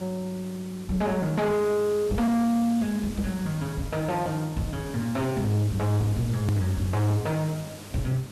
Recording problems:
distorted audio; soft clipping, signal-to-distortion ratio 7 dB
electrical hum; 50 Hz, harmonics up to 900 Hz, SNR 21 dB
background hiss; slope -3 dB per octave, SNR 16 dB
hard cut with a click; at 6.5 s

